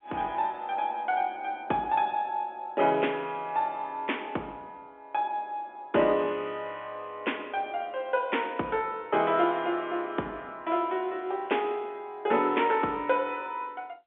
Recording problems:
phone line; 280 Hz to 3.5 kHz, G.711

